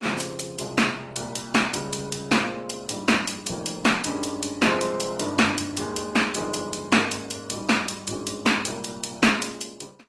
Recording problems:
codec artefacts; Opus, then AAC, log-spectral distance 7 dB, nothing above 11 kHz

